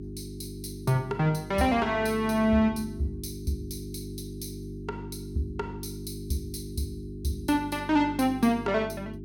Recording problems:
hum; 50 Hz, harmonics up to 400 Hz, SNR 11 dB

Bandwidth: 17.5 kHz